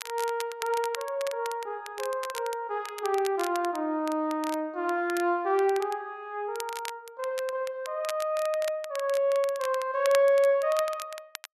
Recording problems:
crackle; vinyl, SNR 14 dB

